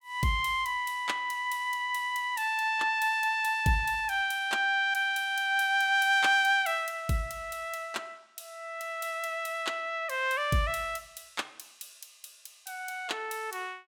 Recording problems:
none

